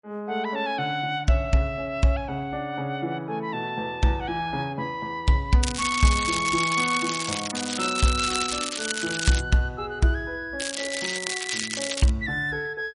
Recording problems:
lossy compression; MP3, log-spectral distance 6 dB, nothing above 10.4 kHz
crackling; from 5.5 to 9.5 s and from 11 to 12 s; loose cable, SNR 3 dB

